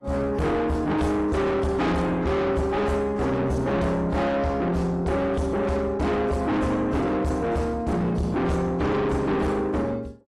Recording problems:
lossy compression; AAC, log-spectral distance 2 dB
distortion; soft clipping, signal-to-distortion ratio 6 dB

